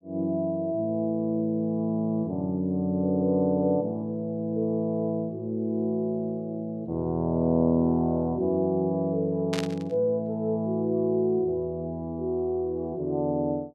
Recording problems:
static burst; at 9.5 s; peak -2 dB vs average level

